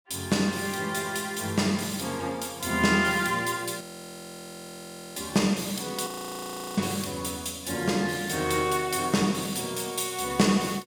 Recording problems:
frozen audio; at 4 s for 1.5 s and at 6 s for 0.5 s

